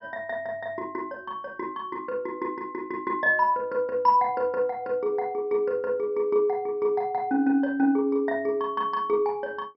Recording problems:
treble cut off; nothing above 5.4 kHz

